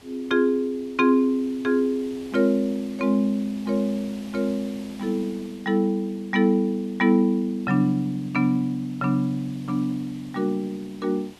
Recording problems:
background hiss; SNR 24 dB

